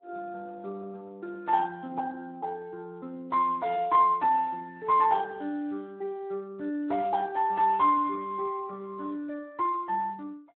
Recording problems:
telephone audio; 240 Hz to 3.2 kHz, Speex

